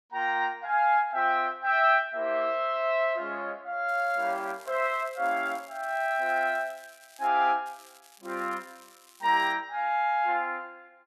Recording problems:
crackling; from 4 to 7.5 s and from 7.5 to 9.5 s; loose cable, SNR 26 dB

